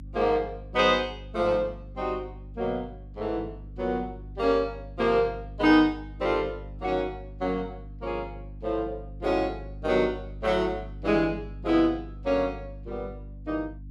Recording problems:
hum; 50 Hz, harmonics up to 300 Hz, SNR 15 dB

